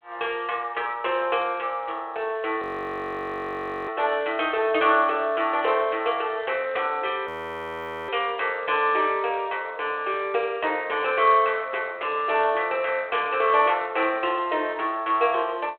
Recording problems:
phone line; 340 Hz to 3.7 kHz, G.726
frozen audio; at 2.5 s for 1.5 s and at 7.5 s for 1 s

